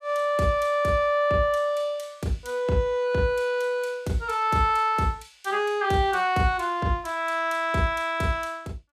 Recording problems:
none

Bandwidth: 15.5 kHz